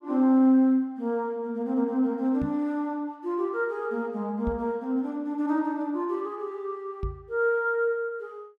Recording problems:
knock on the microphone; at 2.5 s, at 4.5 s and at 7 s; peak -3 dB vs average level

